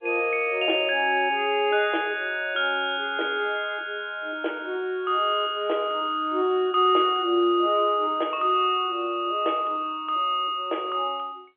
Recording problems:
phone line; 280 Hz to 3.4 kHz, G.711

